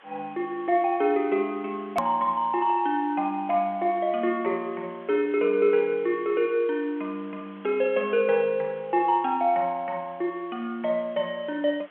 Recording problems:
telephone audio; 260 Hz to 3.6 kHz, G.711
background hiss; SNR 26 dB
hard cut with a click; at 2 s

